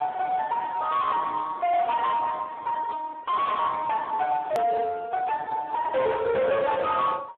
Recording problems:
telephone audio; 300 Hz to 3.7 kHz, Speex
distorted audio; soft clipping, signal-to-distortion ratio 10 dB
click at an edit; at 4.5 s

